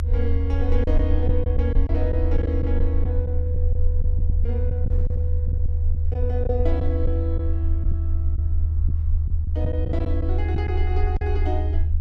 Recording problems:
rumble; below 78 Hz, SNR -7 dB
wind noise; below 110 Hz, SNR 15 dB
packet loss; 6% of the sound replaced, filled with silence

